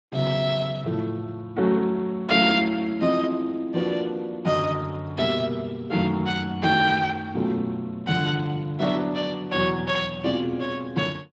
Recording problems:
lossy compression; Speex, log-spectral distance 3 dB, nothing above 7.3 kHz

